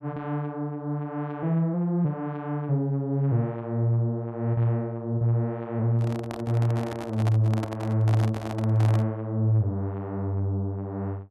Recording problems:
handling noise; from 6 to 9 s; peak -4 dB vs average level

